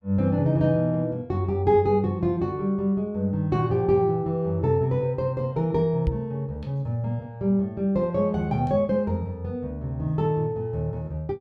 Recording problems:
microphone thump; at 6 s; peak +3 dB vs average level

